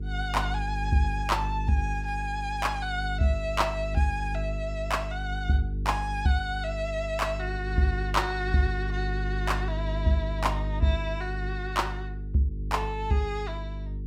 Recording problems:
mains hum; 50 Hz, harmonics up to 450 Hz, SNR 4 dB

